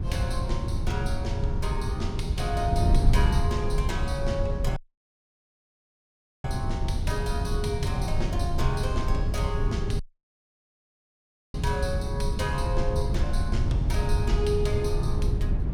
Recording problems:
wind on the microphone; below 110 Hz, SNR -4 dB
audio cutting out; at 5 s for 1.5 s and at 10 s for 1.5 s

